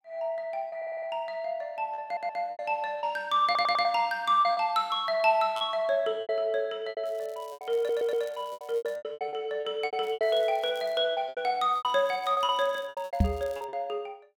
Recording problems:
packet loss; 13% of the sound replaced, filled with repeated pitch periods
stutter; 4 times, first at 1 s
crackle; from 7 to 9 s, at 10 s and from 12 to 14 s; loose cable, SNR 27 dB
microphone thump; at 13 s; peak +8 dB vs average level

